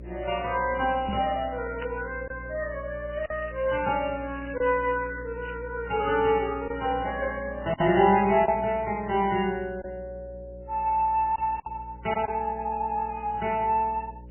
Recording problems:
codec artefacts; MP3, log-spectral distance 4 dB, nothing above 3 kHz
hum; 60 Hz, harmonics up to 600 Hz, SNR 17 dB
lost packets; 2% of the sound replaced, filled with silence
crackling; from 1 to 2 s and from 3 to 5.5 s; loose cable, SNR 23 dB
microphone thump; at 1 s; peak -2 dB vs average level

